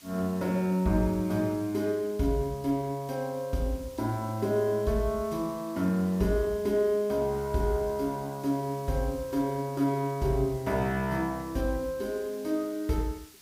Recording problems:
hiss; slope +1 dB per octave, SNR 22 dB

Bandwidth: 15.5 kHz